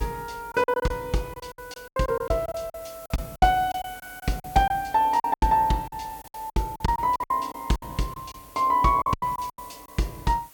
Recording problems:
hiss; slope -1 dB per octave, SNR 21 dB
packet loss; 15% of the sound replaced, filled with silence

